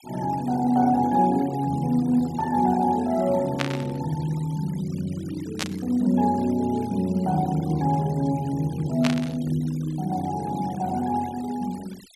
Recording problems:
noise reduction artefacts; signal-to-artefact ratio 22 dB
burst of static; at 3.5 s, at 5.5 s and at 9 s; peak +2 dB vs average level

